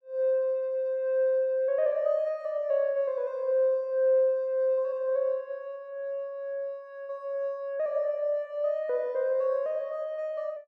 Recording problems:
none

